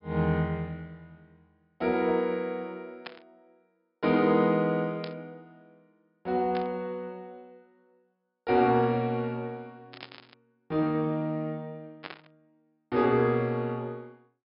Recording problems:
treble cut off; nothing above 5.5 kHz
static burst; 5 times, first at 3 s; peak -7 dB vs average level

